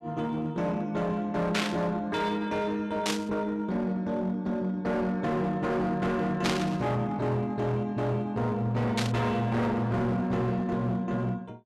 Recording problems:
distorted audio; hard clipping, signal-to-distortion ratio 10 dB
static burst; 4 times, first at 1.5 s; peak +3 dB vs average level

